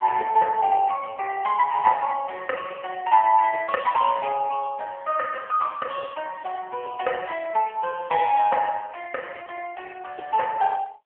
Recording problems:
phone line; 340 Hz to 3.3 kHz, AMR-NB

